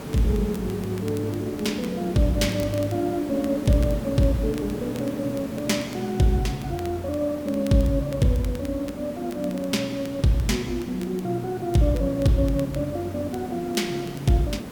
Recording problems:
background hiss; slope -7 dB per octave, SNR 11 dB
crackling; vinyl, SNR 23 dB

